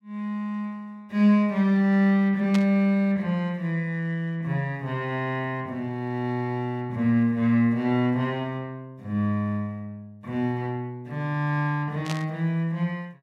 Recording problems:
burst of static; at 2.5 s and at 12 s; peak -4 dB vs average level

